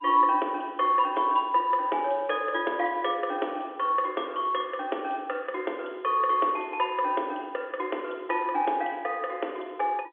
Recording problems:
phone line; 260 Hz to 3.7 kHz, G.711

